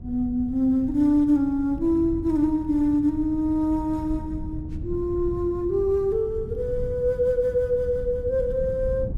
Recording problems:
wind on the microphone; below 120 Hz, SNR 12 dB

